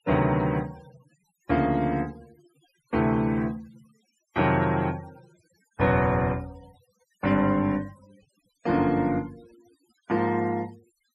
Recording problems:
noise reduction artefacts; signal-to-artefact ratio 25 dB

